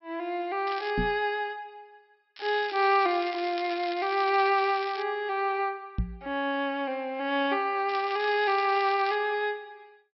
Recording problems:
treble cut off; nothing above 5.5 kHz
crackling; at 0.5 s, from 2.5 to 5 s and from 8 to 9 s; loose cable, SNR 14 dB
knock on the microphone; at 1 s and at 6 s; peak +1 dB vs average level

